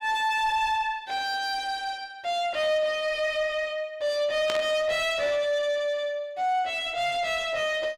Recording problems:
distortion; soft clipping, signal-to-distortion ratio 10 dB
burst of static; at 4.5 s; peak -1 dB vs average level

